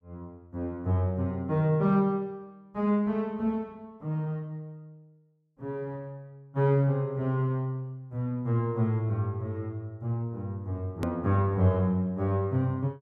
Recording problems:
edit click; at 11 s

